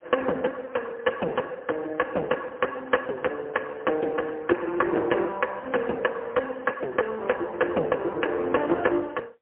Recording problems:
telephone audio; 280 Hz to 2.3 kHz, AMR-NB, then MP3

